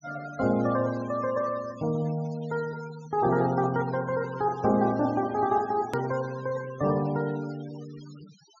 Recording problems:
low-pass filter; nothing above 6.9 kHz
denoising artefacts; signal-to-artefact ratio 21 dB
click at an edit; at 6 s

